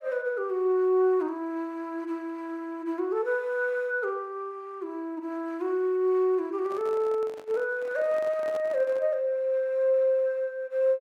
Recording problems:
handling noise; from 6.5 to 9 s; peak -10 dB vs average level

